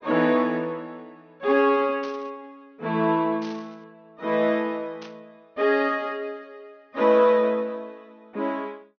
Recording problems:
treble cut off; nothing above 6.4 kHz
static burst; at 2 s, at 3.5 s and at 5 s; peak -14 dB vs average level

